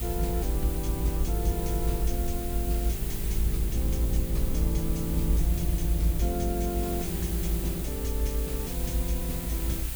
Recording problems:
background hiss; slope -1 dB per octave, SNR 3 dB
rumble; below 60 Hz, strongest tone 52 Hz, SNR -3 dB

